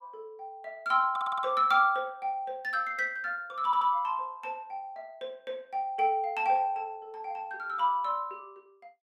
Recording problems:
stutter; at 1 s and at 3.5 s

